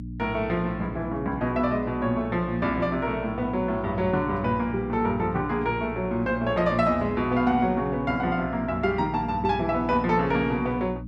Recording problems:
electrical hum; 60 Hz, harmonics up to 300 Hz, SNR 11 dB

